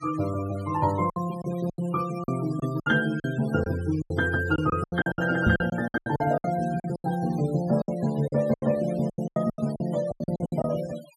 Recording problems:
denoising artefacts; signal-to-artefact ratio 20 dB
lost packets; 16% of the sound replaced, filled with silence
microphone thump; at 5.5 s; peak +7 dB vs average level

